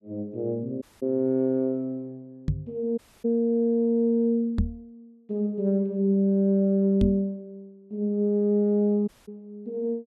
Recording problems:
audio cutting out; at 1 s, at 3 s and at 9 s
microphone bump; at 2.5 s, at 4.5 s and at 7 s; peak +3 dB vs average level

